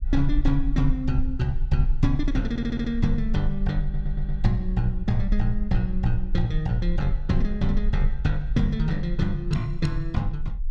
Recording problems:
low-frequency rumble; below 40 Hz, strongest tone 22 Hz, SNR 4 dB
stutter; at 2.5 s and at 4 s

